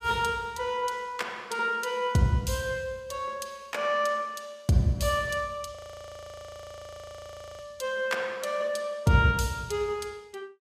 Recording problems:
audio freezing; at 6 s for 2 s

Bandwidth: 15.5 kHz